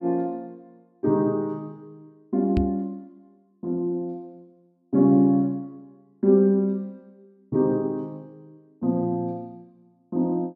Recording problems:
microphone thump; at 2.5 s; peak +1 dB vs average level

